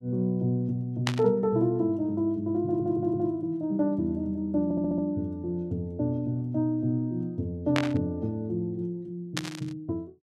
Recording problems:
burst of static; at 1 s, at 8 s and at 9.5 s; peak +4 dB vs average level
stutter; at 2.5 s and at 4.5 s

